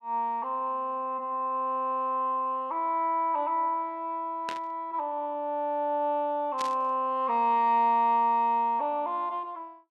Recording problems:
burst of static; at 4.5 s and at 6.5 s; peak -5 dB vs average level

